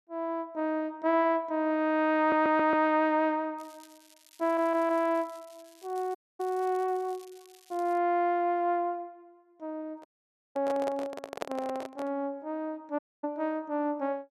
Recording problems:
stutter; at 2 s and at 4.5 s
crackling; from 3.5 to 8 s; loose cable, SNR 27 dB
dropout; at 6 s, at 10 s for 0.5 s and at 13 s
microphone handling noise; from 10 to 12 s; peak 0 dB vs average level

